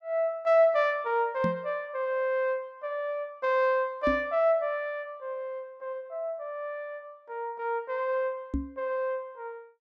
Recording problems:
knock on the microphone; at 1.5 s, at 4 s and at 8.5 s; peak +2 dB vs average level

